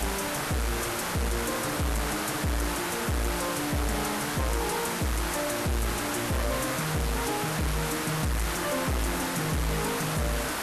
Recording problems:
codec artefacts; Vorbis, log-spectral distance 12 dB, nothing above 13.1 kHz
distortion; hard clipping, uneven, signal-to-distortion ratio 7 dB
background hiss; SNR 1 dB

